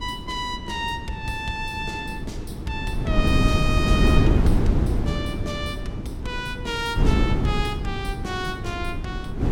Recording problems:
wind noise; below 220 Hz, SNR -4 dB

